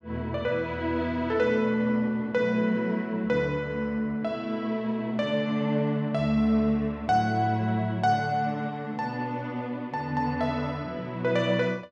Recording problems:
none

